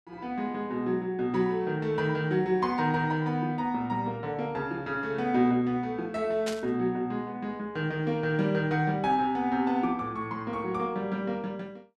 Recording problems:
static burst; at 6.5 s; peak -3 dB vs average level

